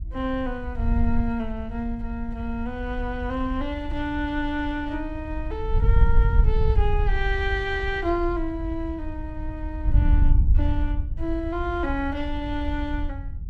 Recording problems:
wind on the microphone; below 70 Hz, SNR -1 dB

